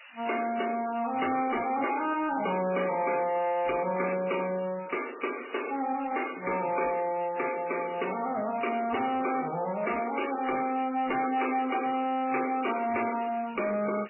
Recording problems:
lossy compression; MP3, log-spectral distance 19 dB, nothing above 2.4 kHz
distortion; soft clipping, signal-to-distortion ratio 10 dB
background hiss; SNR 20 dB

